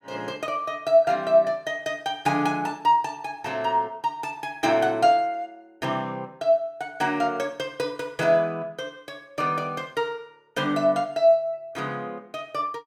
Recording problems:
none

